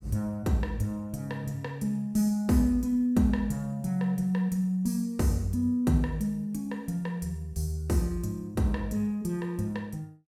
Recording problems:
none

